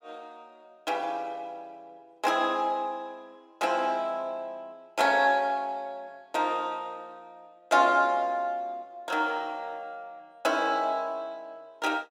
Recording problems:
none

